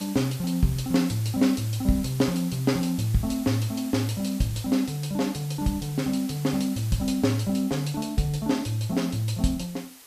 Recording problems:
hiss; slope 0 dB per octave, SNR 17 dB

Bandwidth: 14.5 kHz